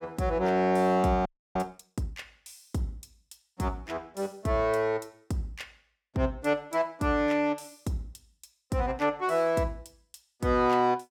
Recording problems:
frozen audio; at 1.5 s

